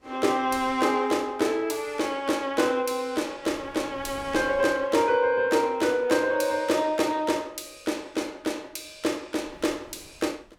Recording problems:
wind on the microphone; below 1.1 kHz, SNR 23 dB

